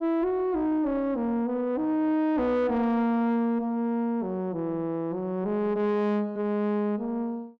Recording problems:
distorted audio; soft clipping, signal-to-distortion ratio 9 dB

